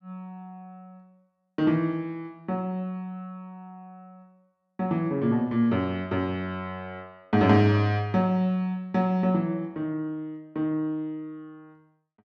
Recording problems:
none

